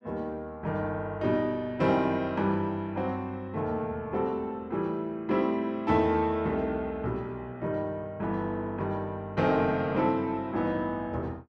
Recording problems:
none

